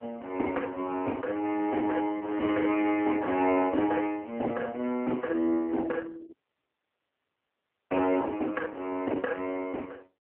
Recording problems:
telephone audio; 240 Hz to 2.5 kHz, AMR-NB
audio cutting out; at 6.5 s for 1.5 s

